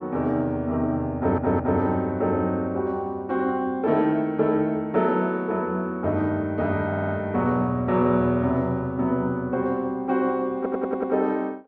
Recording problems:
stutter; at 1 s, at 7 s and at 11 s

